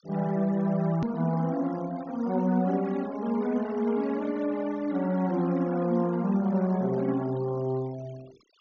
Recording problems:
treble cut off; nothing above 6.7 kHz
noise reduction artefacts; signal-to-artefact ratio 22 dB
hard cut with a click; at 1 s

